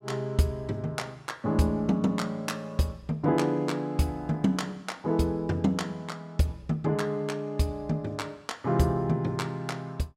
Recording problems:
none

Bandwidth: 16 kHz